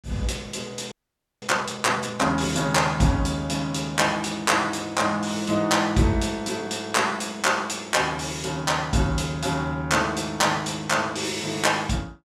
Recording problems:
frozen audio; at 1 s

